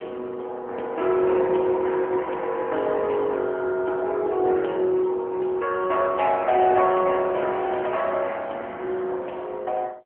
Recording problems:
telephone audio; 280 Hz to 3.4 kHz, AMR-NB

